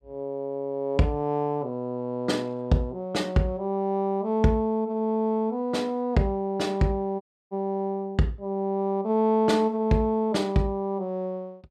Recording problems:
dropout; at 7 s

